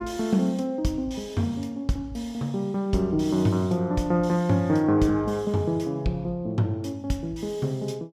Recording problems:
none

